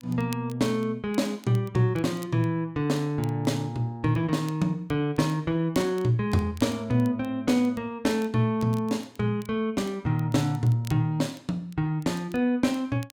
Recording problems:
crackle; vinyl, SNR 25 dB

